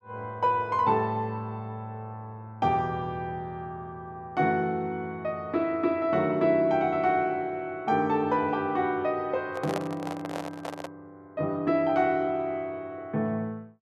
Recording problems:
handling noise; from 9.5 to 11 s; peak 0 dB vs average level

